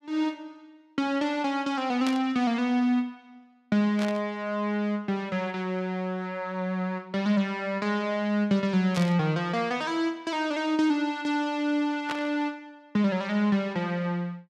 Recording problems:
burst of static; 4 times, first at 2 s; peak -2 dB vs average level

